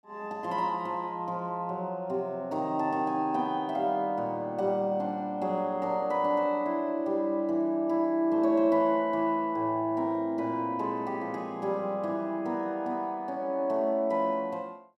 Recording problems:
none

